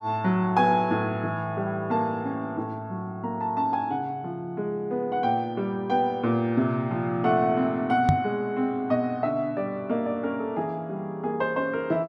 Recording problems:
knock on the microphone; at 8 s; peak +7 dB vs average level

